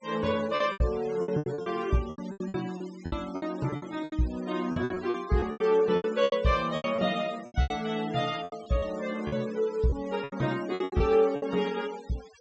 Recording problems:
treble missing; nothing above 8 kHz
denoising artefacts; signal-to-artefact ratio 19 dB
lost packets; 16% of the sound replaced, filled with repeated pitch periods

